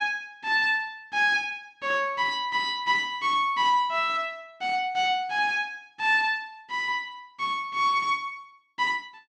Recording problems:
none

